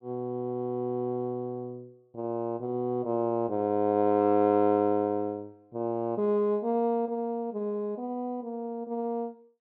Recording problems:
none

